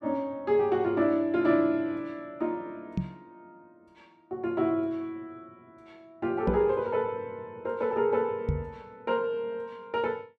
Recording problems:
microphone thump; at 3 s, at 6.5 s and at 8.5 s; peak +4 dB vs average level

